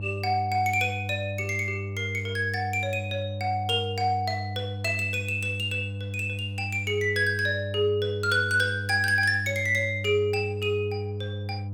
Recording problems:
electrical hum; 50 Hz, harmonics up to 500 Hz, SNR 8 dB

